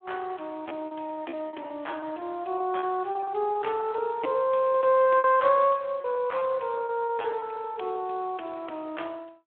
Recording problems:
telephone audio; 240 Hz to 3.5 kHz, Speex
lost packets; 11% of the sound replaced, filled with repeated pitch periods

